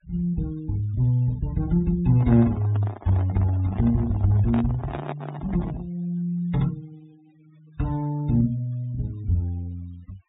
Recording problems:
treble cut off; nothing above 4 kHz
noise reduction artefacts; signal-to-artefact ratio 26 dB
handling noise; from 2 to 6 s; peak -5 dB vs average level

